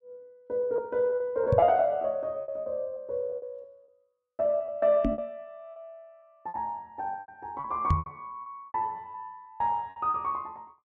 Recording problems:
packet loss; 11% of the sound replaced, filled with repeated pitch periods
microphone bump; at 1.5 s, at 5 s and at 8 s; peak +7 dB vs average level

